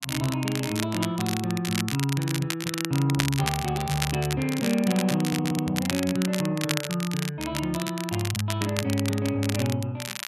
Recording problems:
crackling; vinyl, SNR 6 dB
stutter; at 5.5 s

